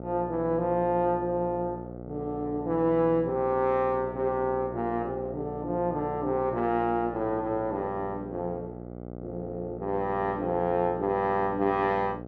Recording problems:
electrical hum; 60 Hz, harmonics up to 1.3 kHz, SNR 12 dB

